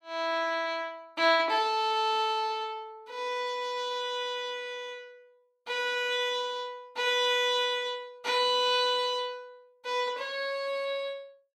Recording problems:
none

